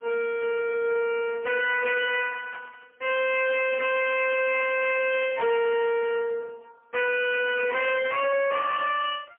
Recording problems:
phone line; 950 Hz to 2.9 kHz, AMR-NB, then MP3
distorted audio; hard clipping, signal-to-distortion ratio 6 dB
static burst; at 2.5 s, at 5.5 s and at 7.5 s; peak -12 dB vs average level

